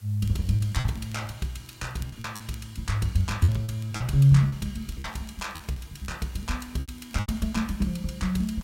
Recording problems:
background hiss; slope 0 dB per octave, SNR 27 dB
crackle; vinyl, SNR 30 dB
packet loss; 8% of the sound replaced, filled with repeated pitch periods

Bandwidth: 16 kHz